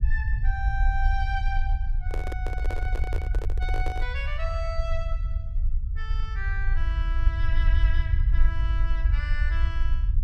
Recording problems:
rumble; below 60 Hz, SNR -8 dB
microphone handling noise; from 2 to 4 s; peak +4 dB vs average level

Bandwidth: 14.5 kHz